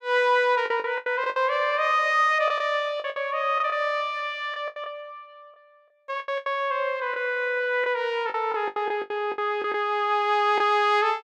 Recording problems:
packet loss; 11% of the sound replaced, filled with the last packet

